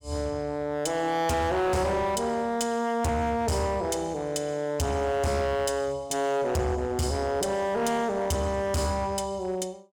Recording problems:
distorted audio; hard clipping, signal-to-distortion ratio 6 dB

